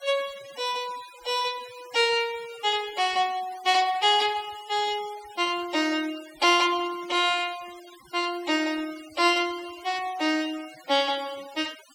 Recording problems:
denoising artefacts; signal-to-artefact ratio 19 dB

